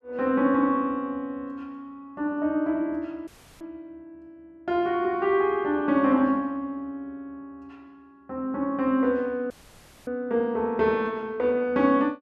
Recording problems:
audio cutting out; at 3.5 s and at 9.5 s for 0.5 s

